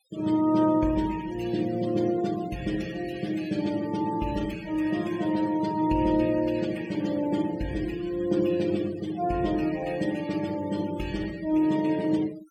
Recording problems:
noise reduction artefacts; signal-to-artefact ratio 18 dB

